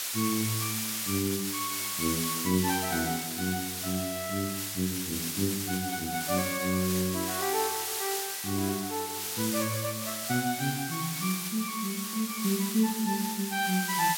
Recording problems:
background hiss; slope +3 dB per octave, SNR 1 dB

